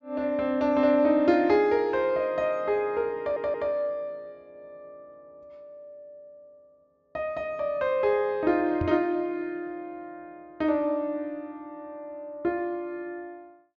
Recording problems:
treble missing; nothing above 7.4 kHz
stutter; at 3 s
knock on the microphone; at 9 s; peak -2 dB vs average level

